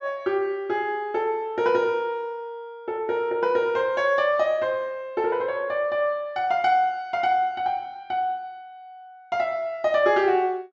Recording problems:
treble missing; nothing above 8 kHz

